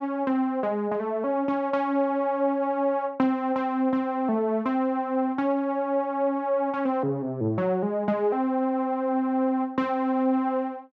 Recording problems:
none

